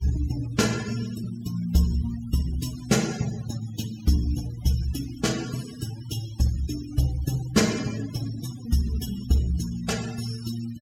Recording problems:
noise reduction artefacts; signal-to-artefact ratio 15 dB

